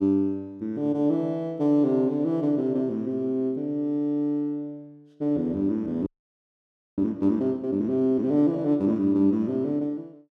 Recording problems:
frozen audio; at 6 s for 1 s

